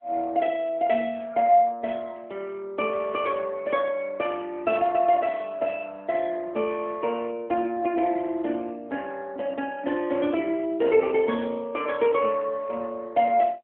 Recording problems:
telephone audio; 280 Hz to 3.3 kHz, AMR-NB

